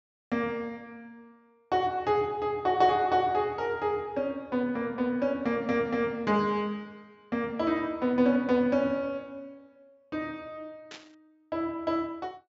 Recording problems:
low-pass filter; nothing above 8 kHz
static burst; at 11 s; peak -11 dB vs average level

